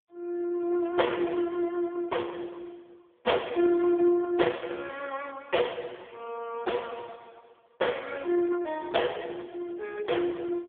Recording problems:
phone line; 280 Hz to 3 kHz, AMR-NB

